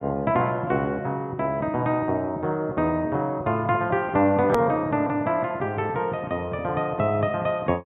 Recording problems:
treble cut off; nothing above 4 kHz
click at an edit; at 4.5 s

